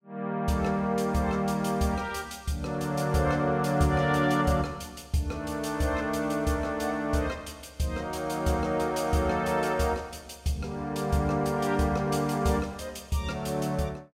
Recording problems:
none

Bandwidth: 16 kHz